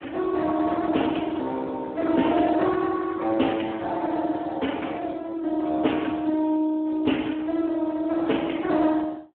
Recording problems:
phone line; 220 Hz to 3.4 kHz, Speex

